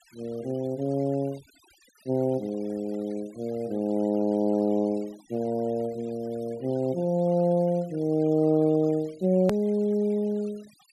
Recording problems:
noise reduction artefacts; signal-to-artefact ratio 27 dB
hard cut with a click; at 9.5 s

